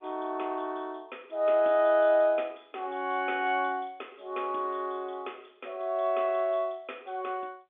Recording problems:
telephone audio; 240 Hz to 3.6 kHz, G.711

